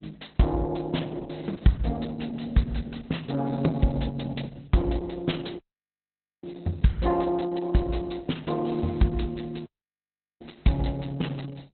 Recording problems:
codec artefacts; Opus, log-spectral distance 6 dB, nothing above 4.1 kHz
dropout; at 5.5 s for 1 s and at 9.5 s for 1 s

